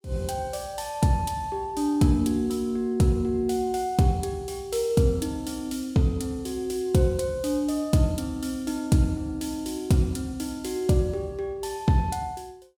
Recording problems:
none

